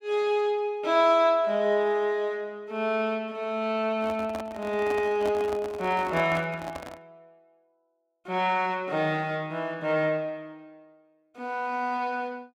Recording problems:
handling noise; from 4 to 7 s; peak -5 dB vs average level

